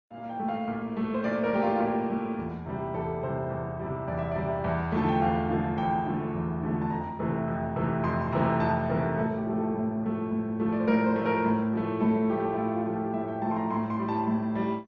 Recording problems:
codec artefacts; MP2, then Opus, log-spectral distance 2 dB, nothing above 6.5 kHz

